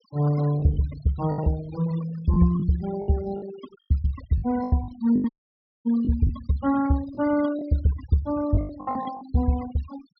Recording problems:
treble cut off; nothing above 5.5 kHz
denoising artefacts; signal-to-artefact ratio 17 dB
lost packets; 9% of the sound replaced, filled with the last packet
dropout; at 5.5 s for 0.5 s

